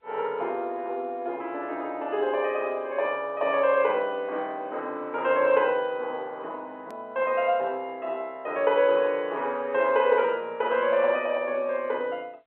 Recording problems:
telephone audio; 300 Hz to 3.4 kHz, G.711
click at an edit; at 7 s

